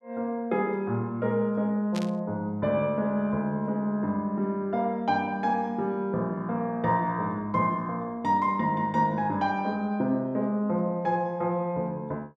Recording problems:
static burst; at 2 s; peak -6 dB vs average level

